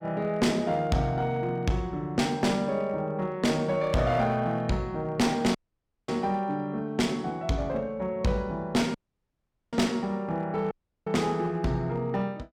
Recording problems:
distorted audio; hard clipping, uneven, signal-to-distortion ratio 10 dB
audio cutting out; at 5.5 s for 0.5 s, at 9 s for 1 s and at 11 s

